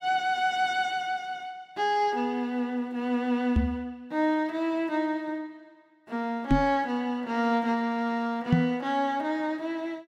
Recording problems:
knock on the microphone; at 3.5 s, at 6.5 s and at 8.5 s; peak +9 dB vs average level

